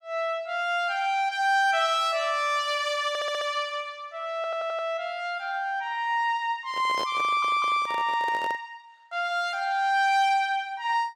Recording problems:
audio stuttering; at 3 s, at 4.5 s and at 7 s
microphone handling noise; from 6.5 to 8.5 s; peak -6 dB vs average level

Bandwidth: 16 kHz